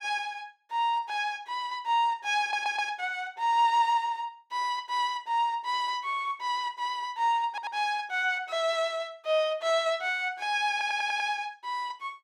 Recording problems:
stutter; at 2.5 s, at 7.5 s and at 11 s

